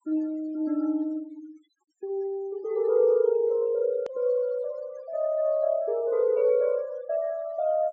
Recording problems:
treble missing; nothing above 8 kHz
denoising artefacts; signal-to-artefact ratio 24 dB
click at an edit; at 4 s

